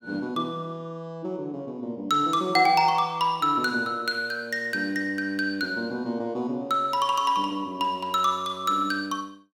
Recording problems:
none

